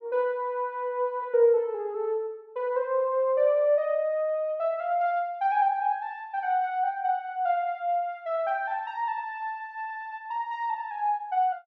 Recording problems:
none

